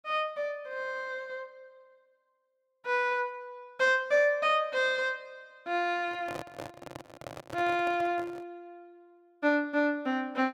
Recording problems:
handling noise; from 6 to 8.5 s; peak -6 dB vs average level

